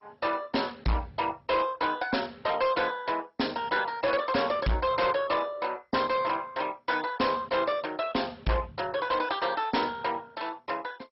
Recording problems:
lossy compression; MP2, then MP2, log-spectral distance 5 dB, nothing above 5.5 kHz
distortion; hard clipping, signal-to-distortion ratio 10 dB

